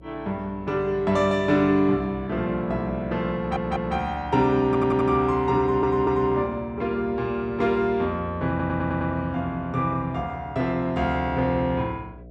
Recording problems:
hum; 60 Hz, harmonics up to 720 Hz, SNR 21 dB
stutter; 4 times, first at 3.5 s

